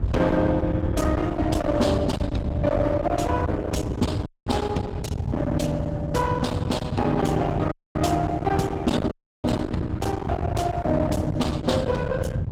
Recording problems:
lossy compression; Opus, log-spectral distance 2 dB, nothing above 18.3 kHz
distortion; hard clipping, uneven, signal-to-distortion ratio 7 dB
rumble; below 250 Hz, SNR 2 dB
wind noise; below 510 Hz, SNR 20 dB
dropout; at 4.5 s, at 7.5 s and at 9 s

